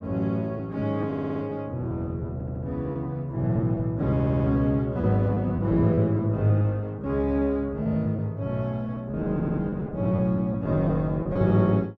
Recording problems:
packet loss; 9% of the sound replaced, filled with repeated pitch periods
stutter; 4 times, first at 1 s

